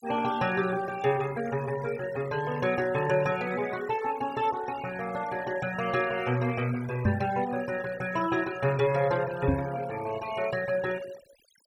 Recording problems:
denoising artefacts; signal-to-artefact ratio 15 dB
knock on the microphone; at 7 s and at 9.5 s; peak +7 dB vs average level

